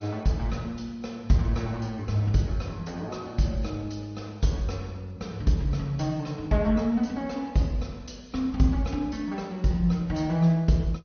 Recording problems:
lossy codec; MP3, then MP2, log-spectral distance 3 dB, nothing above 6.3 kHz

